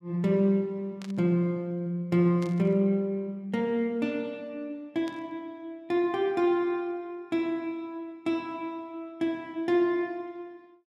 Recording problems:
static burst; at 1 s, at 2.5 s and at 5 s; peak -13 dB vs average level

